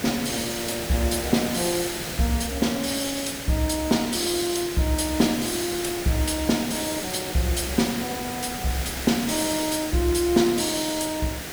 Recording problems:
hiss; SNR 7 dB
crackling; at 7 s and at 10 s; loose cable, SNR 25 dB

